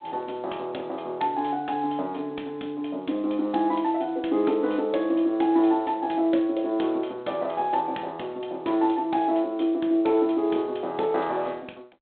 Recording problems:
phone line; 240 Hz to 3.8 kHz, G.726

